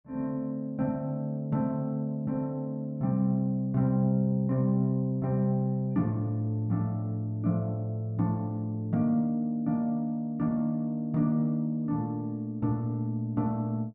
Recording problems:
none

